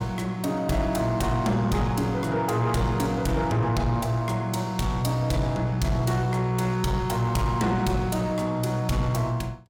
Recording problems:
distortion; soft clipping, signal-to-distortion ratio 12 dB

